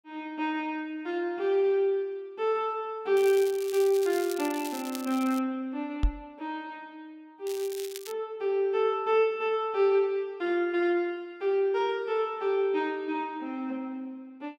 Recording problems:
crackle; from 3 to 5.5 s and at 7.5 s; loose cable, SNR 14 dB
microphone bump; at 6 s; peak +5 dB vs average level

